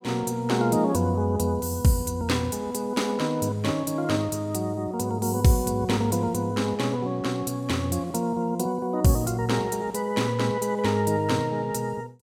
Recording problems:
none

